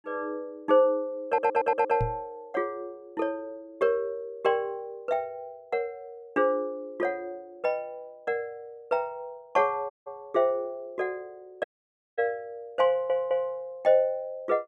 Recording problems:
stutter; at 1.5 s and at 13 s
microphone thump; at 2 s; peak +1 dB vs average level
audio cutting out; at 10 s and at 12 s for 0.5 s

